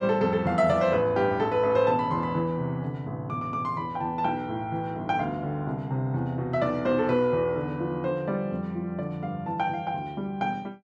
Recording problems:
none

